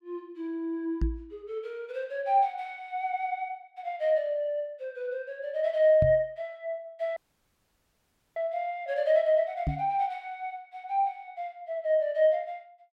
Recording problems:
knock on the microphone; at 1 s, at 6 s and at 9.5 s; peak +3 dB vs average level
audio cutting out; at 7 s for 1 s

